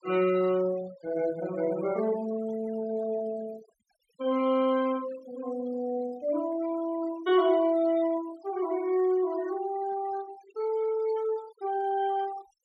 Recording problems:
noise reduction artefacts; signal-to-artefact ratio 19 dB

